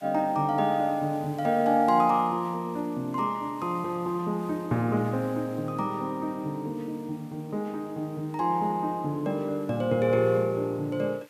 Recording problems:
background hiss; SNR 27 dB

